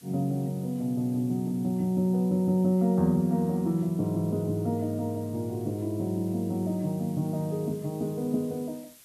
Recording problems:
background hiss; slope +1 dB per octave, SNR 25 dB

